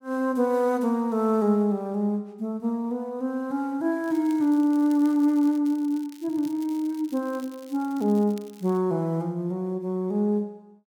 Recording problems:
crackling; from 4 to 9 s; loose cable, SNR 26 dB

